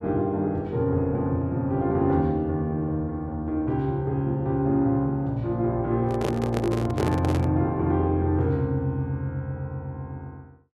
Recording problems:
handling noise; from 6 to 7.5 s; peak +2 dB vs average level

